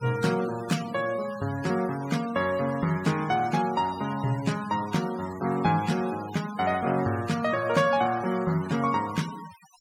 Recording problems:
denoising artefacts; signal-to-artefact ratio 16 dB

